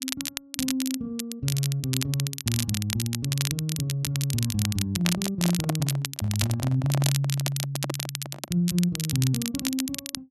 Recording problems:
crackling; vinyl, SNR 4 dB
handling noise; from 5 to 8.5 s; peak +3 dB vs average level

